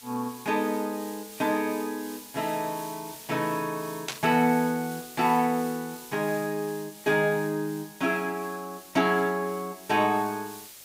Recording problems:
hiss; slope +1 dB per octave, SNR 16 dB
burst of static; at 4 s; peak +1 dB vs average level

